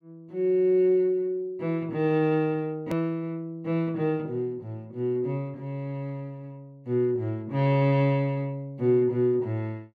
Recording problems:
edit click; at 3 s

